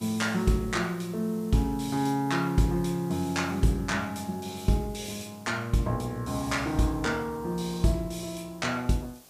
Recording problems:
hiss; SNR 24 dB

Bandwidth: 15 kHz